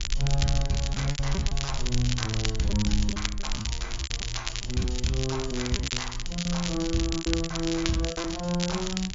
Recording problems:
treble missing; nothing above 7.3 kHz
hum; 60 Hz, harmonics up to 600 Hz, SNR 22 dB
rumble; below 48 Hz, SNR 8 dB
crackle; vinyl, SNR 4 dB
lost packets; 11% of the sound replaced, filled with repeated pitch periods

